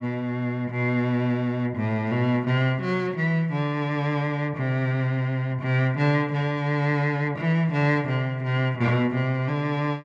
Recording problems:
none

